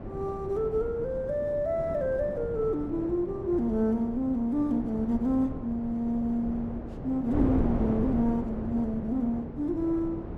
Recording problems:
wind on the microphone; below 390 Hz, SNR 7 dB

